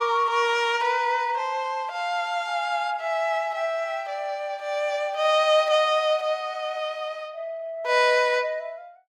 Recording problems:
none

